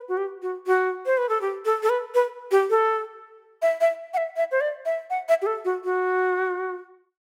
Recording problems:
none

